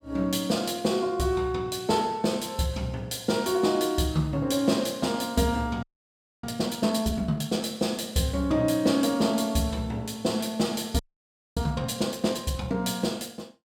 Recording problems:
frozen audio; at 6 s for 0.5 s and at 11 s for 0.5 s

